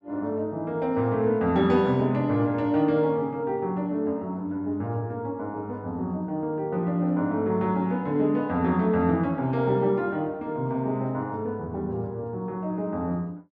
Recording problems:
none

